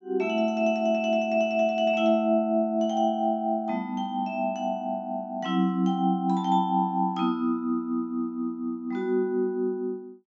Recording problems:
low-pass filter; nothing above 8 kHz

